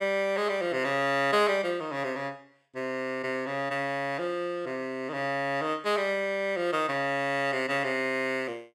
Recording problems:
none

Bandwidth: 16 kHz